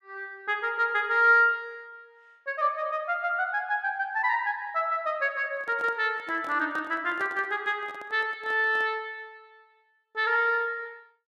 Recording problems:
handling noise; from 5.5 to 9 s; peak -12 dB vs average level

